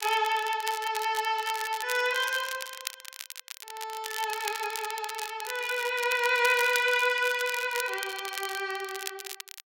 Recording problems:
crackle; vinyl, SNR 10 dB

